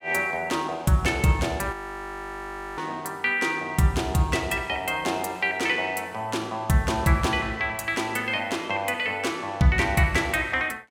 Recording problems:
frozen audio; at 1.5 s for 1 s

